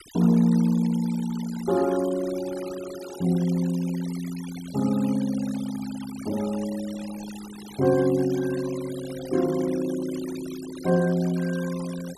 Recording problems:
denoising artefacts; signal-to-artefact ratio 17 dB

